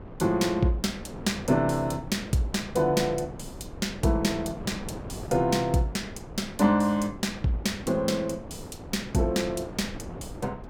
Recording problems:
wind noise; below 480 Hz, SNR 13 dB

